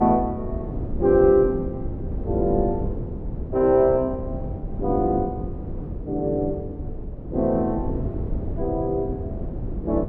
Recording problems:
wind on the microphone; below 220 Hz, SNR 8 dB

